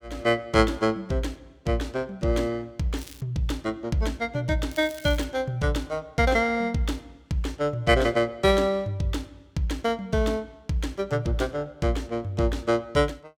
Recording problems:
crackling; at 3 s and at 4.5 s; loose cable, SNR 20 dB

